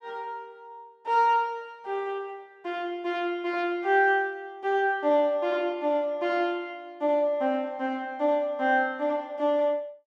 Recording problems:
none

